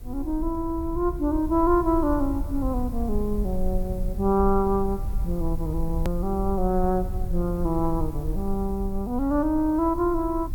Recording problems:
background hiss; SNR 26 dB
low-frequency rumble; below 58 Hz, SNR 7 dB
hard cut with a click; at 6 s

